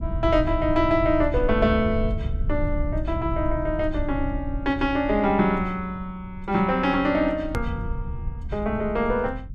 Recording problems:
low-frequency rumble; below 94 Hz, SNR 7 dB
edit click; at 7.5 s

